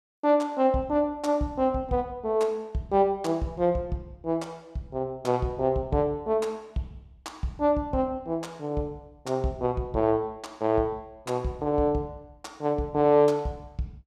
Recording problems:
none

